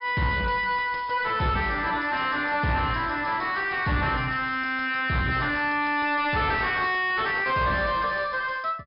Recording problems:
treble missing; nothing above 5.5 kHz
distortion; soft clipping, signal-to-distortion ratio 7 dB

